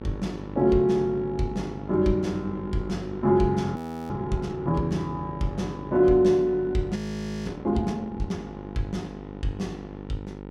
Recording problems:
mains hum; 50 Hz, harmonics up to 1.9 kHz, SNR 13 dB
audio freezing; at 4 s and at 7 s for 0.5 s

